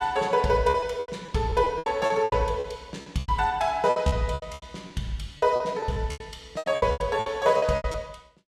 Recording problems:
packet loss; 18% of the sound replaced, filled with repeated pitch periods

